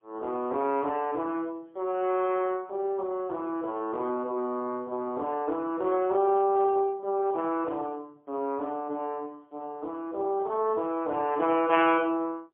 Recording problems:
phone line; 260 Hz to 3.3 kHz, AMR-NB, then MP3

